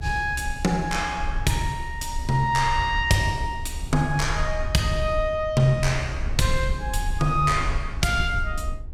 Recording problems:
rumble; below 68 Hz, SNR 8 dB

